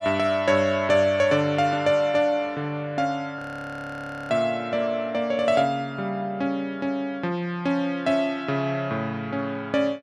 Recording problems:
audio freezing; at 3.5 s for 1 s

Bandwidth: 12 kHz